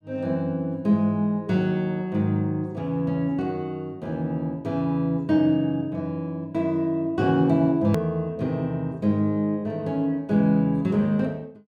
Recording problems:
edit click; at 8 s

